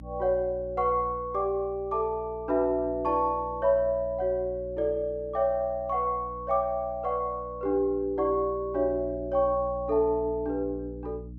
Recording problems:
hum; 60 Hz, harmonics up to 300 Hz, SNR 17 dB

